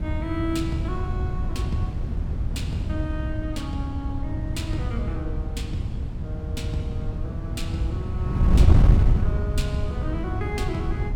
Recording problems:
wind noise; below 120 Hz, SNR -7 dB

